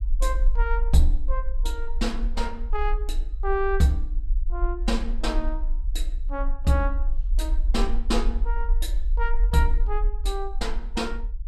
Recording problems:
rumble; below 42 Hz, strongest tone 20 Hz, SNR 0 dB

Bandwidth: 14.5 kHz